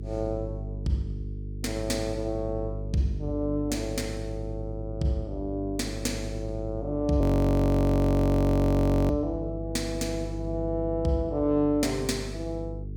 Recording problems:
hum; 50 Hz, harmonics up to 450 Hz, SNR 8 dB
audio freezing; at 7 s for 2 s

